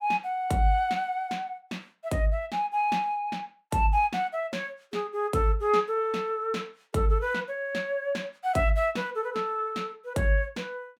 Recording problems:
none

